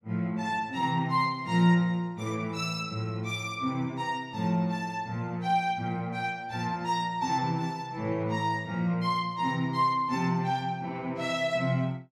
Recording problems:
none

